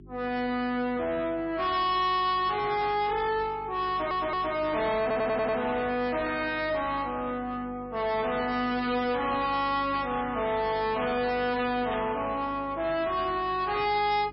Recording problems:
codec artefacts; MP3, log-spectral distance 3 dB, nothing above 4.8 kHz
distorted audio; soft clipping, signal-to-distortion ratio 7 dB
electrical hum; 50 Hz, harmonics up to 400 Hz, SNR 20 dB
stutter; at 4 s and at 5 s
burst of static; at 10 s and at 12 s; peak -9 dB vs average level

